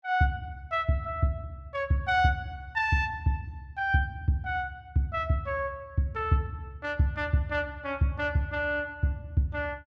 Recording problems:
none

